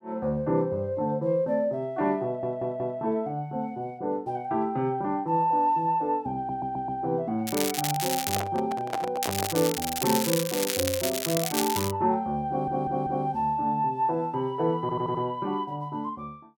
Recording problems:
audio stuttering; 4 times, first at 2.5 s
crackling; at 7.5 s and from 9 to 12 s; loose cable, SNR 2 dB
microphone handling noise; from 8 to 9.5 s; peak +1 dB vs average level

